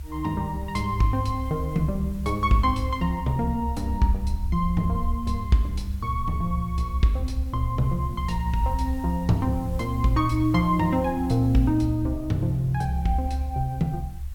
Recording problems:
background hiss; SNR 27 dB
low-frequency rumble; below 70 Hz, strongest tone 70 Hz, SNR 7 dB

